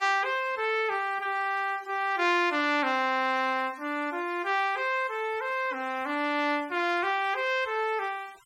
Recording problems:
noise reduction artefacts; signal-to-artefact ratio 24 dB

